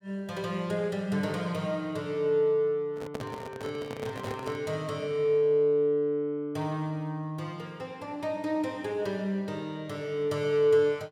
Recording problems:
handling noise; from 3 to 4.5 s; peak -4 dB vs average level

